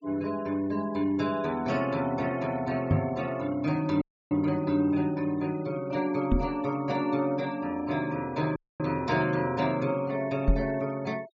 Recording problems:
treble missing; nothing above 7.7 kHz
denoising artefacts; signal-to-artefact ratio 20 dB
microphone thump; at 3 s, at 6.5 s and at 10 s; peak +8 dB vs average level
audio cutting out; at 4 s and at 8.5 s

